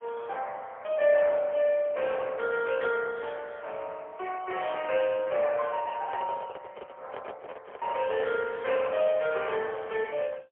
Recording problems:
phone line; 340 Hz to 3.5 kHz, AMR-NB, then MP3
microphone handling noise; from 6 to 8.5 s; peak -5 dB vs average level

